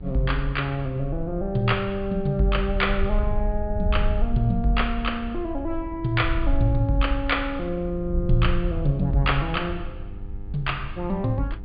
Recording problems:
low-pass filter; nothing above 4.8 kHz
hum; 50 Hz, harmonics up to 1.3 kHz, SNR 20 dB
wind on the microphone; below 60 Hz, SNR 6 dB

